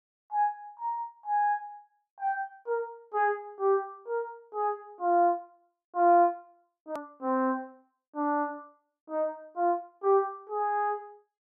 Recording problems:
click at an edit; at 7 s

